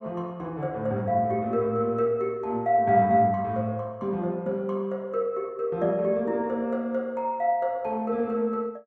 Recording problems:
none

